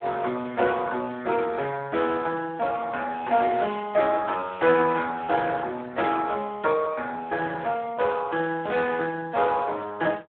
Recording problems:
phone line; 170 Hz to 3 kHz, Speex

